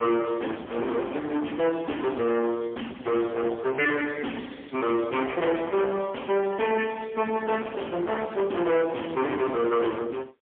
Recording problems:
phone line; 280 Hz to 3.2 kHz, AMR-NB, then MP3
distorted audio; soft clipping, signal-to-distortion ratio 7 dB

